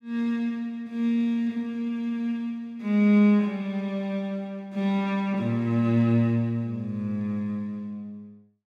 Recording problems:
none

